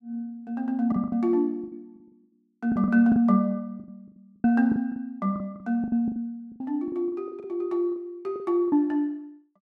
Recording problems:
packet loss; 14% of the sound replaced, filled with the last packet

